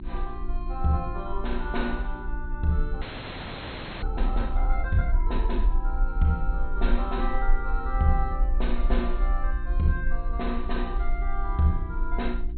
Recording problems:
treble cut off; nothing above 4.3 kHz
hum; 60 Hz, harmonics up to 360 Hz, SNR 12 dB
low-frequency rumble; below 44 Hz, SNR 0 dB
frozen audio; at 3 s for 1 s

